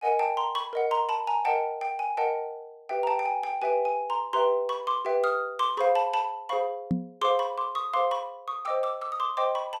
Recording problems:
microphone bump; at 7 s; peak +4 dB vs average level

